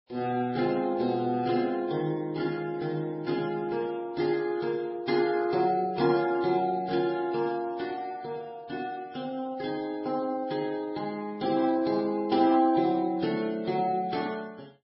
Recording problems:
lossy compression; MP3, then Vorbis, log-spectral distance 2 dB, nothing above 5.3 kHz

